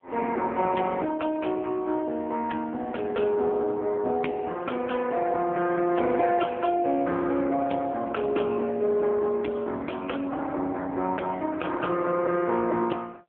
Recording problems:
phone line; 260 Hz to 2.5 kHz, AMR-NB

